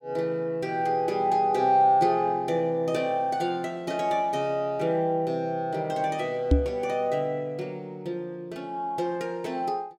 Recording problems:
microphone bump; at 6.5 s; peak +9 dB vs average level

